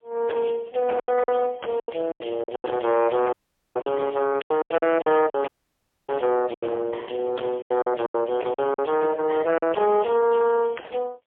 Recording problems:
phone line; 320 Hz to 2.3 kHz, AMR-NB, then MP3
distortion; hard clipping, uneven, signal-to-distortion ratio 10 dB
lost packets; 11% of the sound replaced, filled with silence
audio cutting out; at 3.5 s and at 5.5 s for 0.5 s

